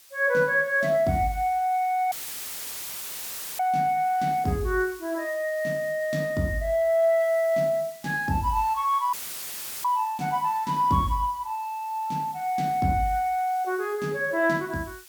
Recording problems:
background hiss; slope +3 dB per octave, SNR 22 dB
dropout; at 2 s for 1.5 s and at 9 s for 0.5 s; filled with static

